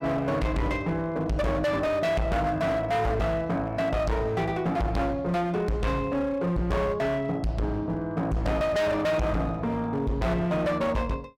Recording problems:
distorted audio; hard clipping, signal-to-distortion ratio 6 dB

